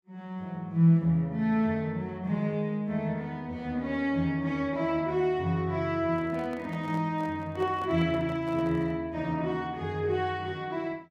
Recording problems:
handling noise; from 6 to 9 s; peak -11 dB vs average level

